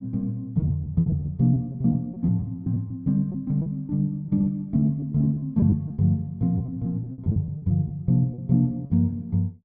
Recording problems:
lost packets; 12% of the sound replaced, filled with repeated pitch periods

